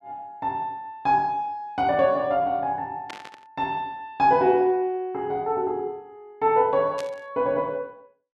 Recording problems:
burst of static; at 3 s and at 7 s; peak -9 dB vs average level

